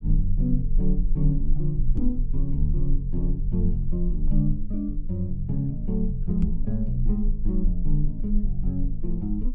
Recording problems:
low-frequency rumble; below 34 Hz, strongest tone 18 Hz, SNR 3 dB
knock on the microphone; at 2 s and at 6.5 s; peak +5 dB vs average level

